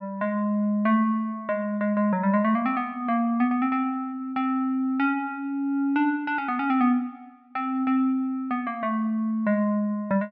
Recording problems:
none

